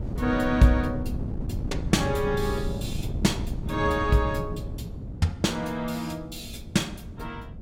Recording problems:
wind on the microphone; below 190 Hz, SNR 6 dB

